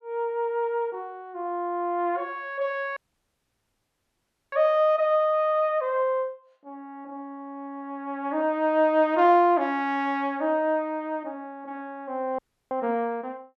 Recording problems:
audio cutting out; at 3 s for 1.5 s and at 12 s

